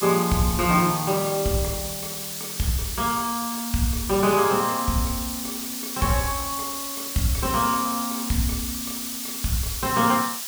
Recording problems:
background hiss; slope +3 dB per octave, SNR 5 dB

